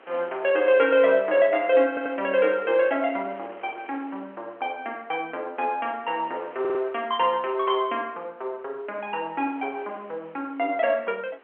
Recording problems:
phone line; 300 Hz to 3.2 kHz, G.711
wind on the microphone; below 1.8 kHz, SNR 23 dB
stutter; at 2 s and at 6.5 s

